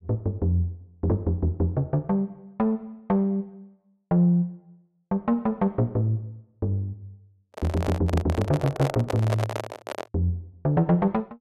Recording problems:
microphone handling noise; from 7.5 to 10 s; peak +1 dB vs average level

